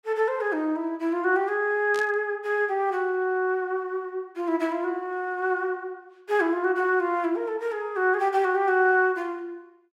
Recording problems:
burst of static; at 2 s; peak -10 dB vs average level

